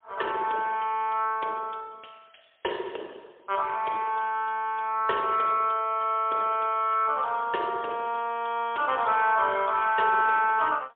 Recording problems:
telephone audio; 320 Hz to 3.5 kHz, AMR-NB, then MP3

